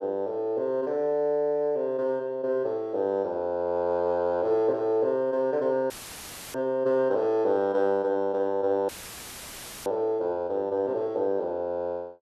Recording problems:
audio cutting out; at 6 s for 0.5 s and at 9 s for 1 s; filled with static

